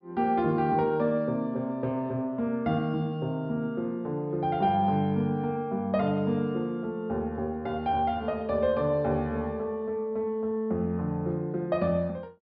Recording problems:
treble missing; nothing above 5.5 kHz

